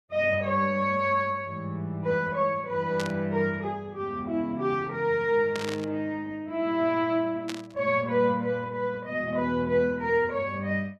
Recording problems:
burst of static; at 3 s, at 5.5 s and at 7.5 s; peak -4 dB vs average level

